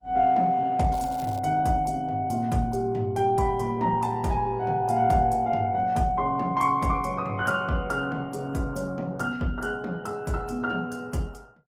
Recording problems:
lossy compression; Opus, log-spectral distance 2 dB
crackling; at 1 s; loose cable, SNR 23 dB

